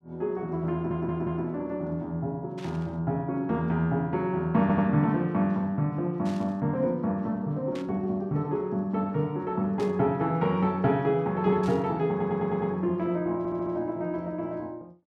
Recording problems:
audio stuttering; 4 times, first at 0.5 s
static burst; 5 times, first at 2.5 s; peak -13 dB vs average level

